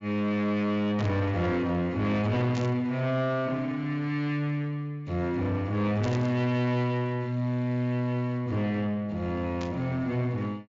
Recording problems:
low-pass filter; nothing above 7.4 kHz
distorted audio; soft clipping, signal-to-distortion ratio 10 dB
burst of static; 4 times, first at 1 s; peak -9 dB vs average level

